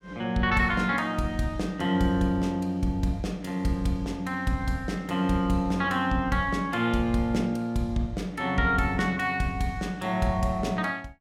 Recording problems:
none

